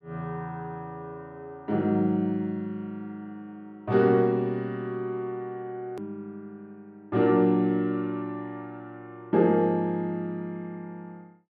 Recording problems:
edit click; at 6 s

